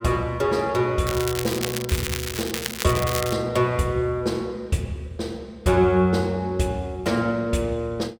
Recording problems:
crackle; from 1 to 3.5 s; loose cable, SNR 6 dB

